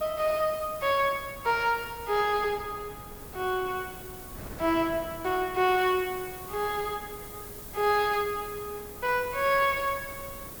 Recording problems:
hiss; slope +1 dB per octave, SNR 15 dB
wind noise; below 650 Hz, SNR 19 dB

